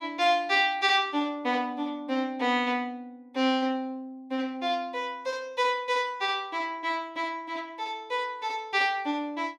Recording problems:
none

